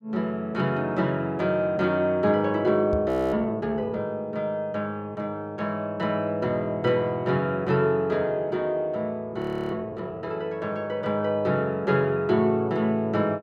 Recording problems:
microphone thump; at 3 s; peak -2 dB vs average level
frozen audio; at 3 s and at 9.5 s

